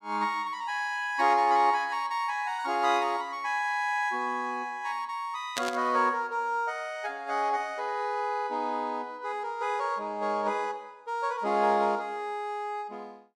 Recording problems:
static burst; at 5.5 s; peak +2 dB vs average level

